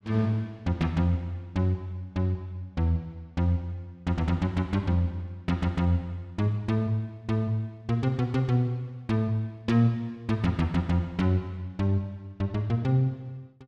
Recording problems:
none

